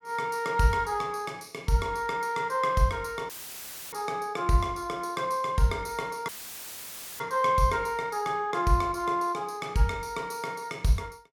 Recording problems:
dropout; at 3.5 s for 0.5 s and at 6.5 s for 1 s; filled with static

